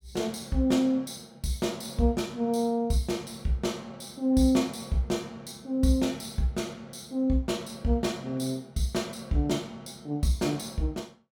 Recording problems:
none

